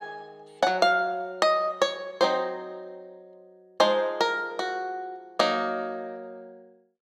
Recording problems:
none

